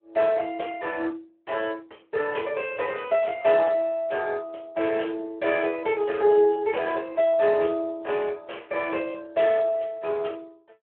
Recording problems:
telephone audio; 340 Hz to 3.3 kHz, Speex

